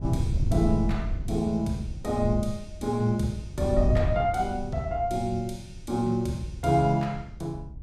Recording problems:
wind noise; below 120 Hz, SNR 5 dB

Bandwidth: 15 kHz